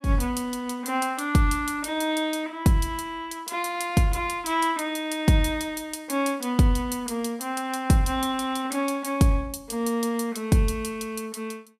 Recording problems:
none

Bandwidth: 14.5 kHz